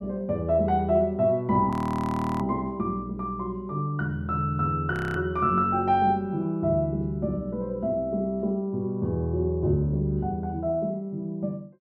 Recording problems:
audio freezing; at 1.5 s for 0.5 s and at 5 s

